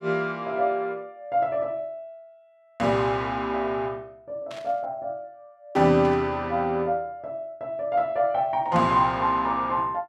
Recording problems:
burst of static; at 4.5 s and at 6 s; peak -13 dB vs average level

